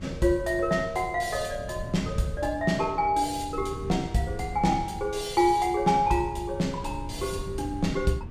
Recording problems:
wind noise; below 150 Hz, SNR 13 dB

